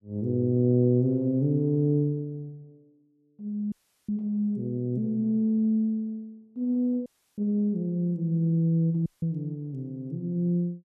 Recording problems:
audio cutting out; at 3.5 s, at 7 s and at 9 s

